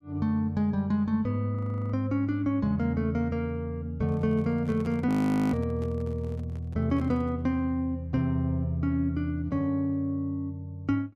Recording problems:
frozen audio; at 1.5 s and at 5 s
handling noise; from 4 to 7.5 s; peak -12 dB vs average level

